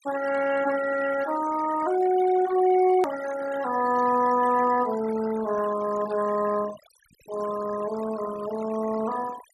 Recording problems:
denoising artefacts; signal-to-artefact ratio 13 dB
hard cut with a click; at 3 s

